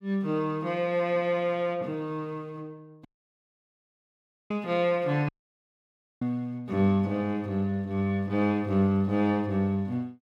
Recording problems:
dropout; at 3 s for 1.5 s and at 5.5 s for 1 s

